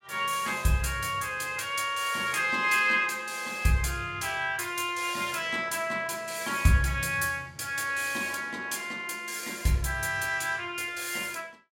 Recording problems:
none

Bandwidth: 16 kHz